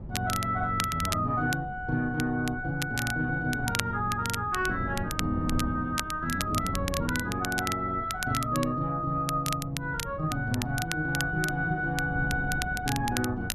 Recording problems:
wind noise; below 190 Hz, SNR 11 dB
crackle; vinyl, SNR 8 dB

